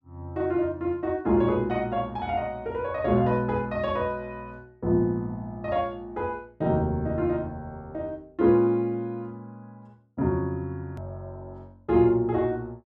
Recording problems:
edit click; at 11 s

